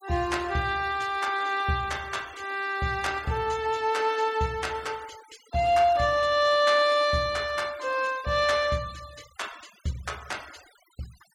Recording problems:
denoising artefacts; signal-to-artefact ratio 22 dB

